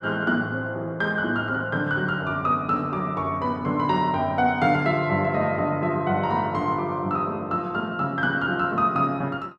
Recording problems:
none

